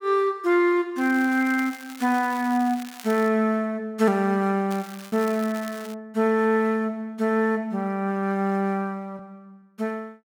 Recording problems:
packet loss; 0.7% of the sound replaced, filled with repeated pitch periods
crackling; from 1 to 3.5 s and from 4.5 to 6 s; loose cable, SNR 19 dB

